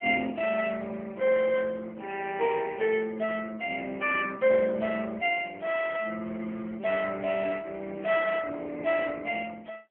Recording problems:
telephone audio; 240 Hz to 3.3 kHz, AMR-NB

